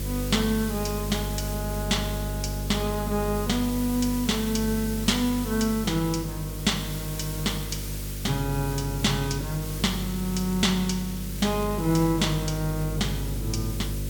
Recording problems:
hum; 50 Hz, harmonics up to 600 Hz, SNR 6 dB
background hiss; slope +1 dB per octave, SNR 10 dB
crackle; from 9 to 12 s and at 12 s; loose cable, SNR 23 dB

